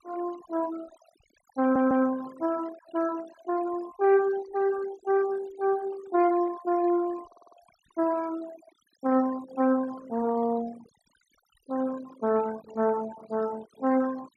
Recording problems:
denoising artefacts; signal-to-artefact ratio 18 dB
stutter; at 1.5 s and at 7.5 s

